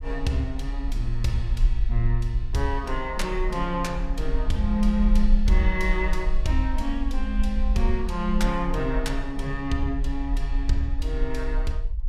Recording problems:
rumble; below 46 Hz, SNR 1 dB

